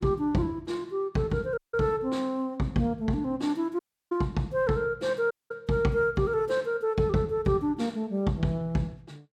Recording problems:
audio cutting out; at 1.5 s, at 4 s and at 5.5 s

